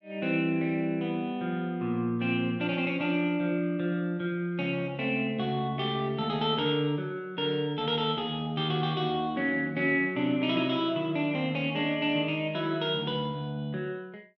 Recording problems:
none

